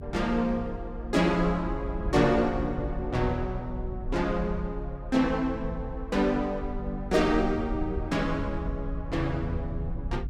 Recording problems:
rumble; below 76 Hz, SNR 9 dB

